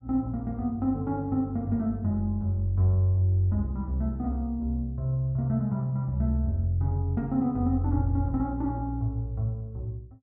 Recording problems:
treble cut off; nothing above 5.7 kHz

